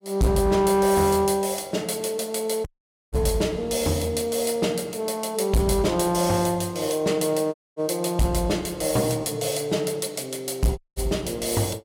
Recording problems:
distortion; hard clipping, signal-to-distortion ratio 11 dB
dropout; at 2.5 s, at 7.5 s and at 11 s

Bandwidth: 16 kHz